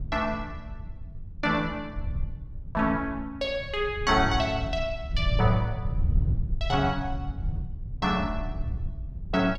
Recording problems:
wind on the microphone; below 100 Hz, SNR 6 dB

